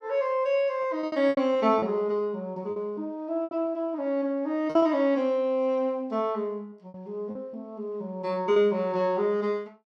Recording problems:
lost packets; 6% of the sound replaced, filled with repeated pitch periods

